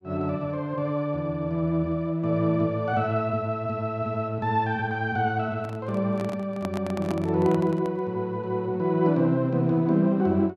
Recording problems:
microphone handling noise; from 5.5 to 8 s; peak -4 dB vs average level

